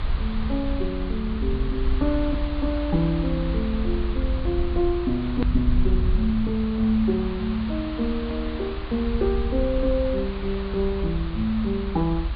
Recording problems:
treble cut off; nothing above 4.6 kHz
background hiss; SNR 13 dB
rumble; below 68 Hz, SNR 3 dB
hard cut with a click; at 5.5 s

